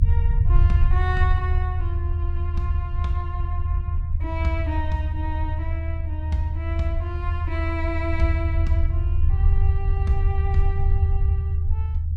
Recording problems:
rumble; below 80 Hz, SNR -7 dB

